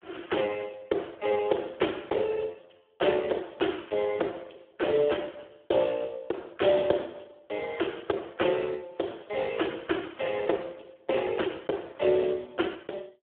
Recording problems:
phone line; 280 Hz to 3.5 kHz, Speex

